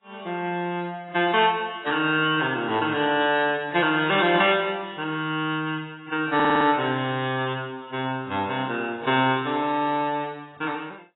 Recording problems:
codec artefacts; AAC, log-spectral distance 4 dB, nothing above 3.6 kHz
audio stuttering; at 6.5 s

